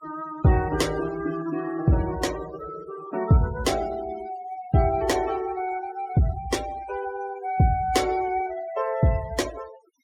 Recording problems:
noise reduction artefacts; signal-to-artefact ratio 16 dB

